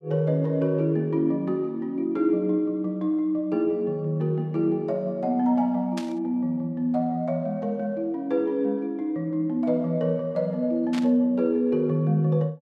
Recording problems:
static burst; at 6 s and at 11 s; peak -7 dB vs average level

